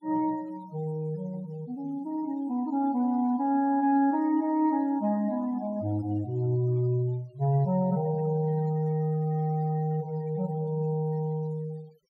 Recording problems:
denoising artefacts; signal-to-artefact ratio 26 dB

